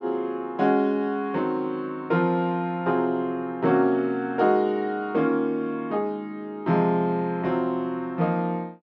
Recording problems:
none

